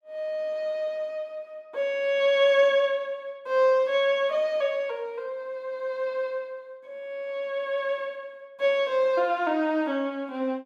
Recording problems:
none

